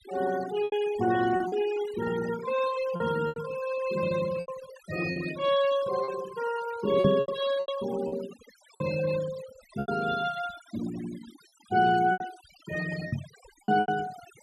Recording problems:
noise reduction artefacts; signal-to-artefact ratio 15 dB
lost packets; 8% of the sound replaced, filled with repeated pitch periods
knock on the microphone; at 7 s and at 13 s; peak +7 dB vs average level

